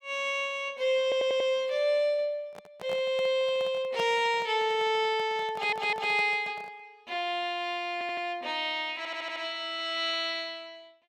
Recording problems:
stutter; 4 times, first at 1 s
handling noise; from 2.5 to 7 s; peak -6 dB vs average level

